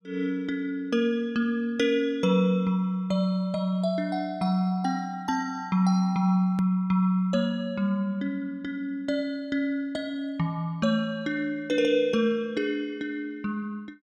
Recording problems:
click at an edit; at 6.5 s

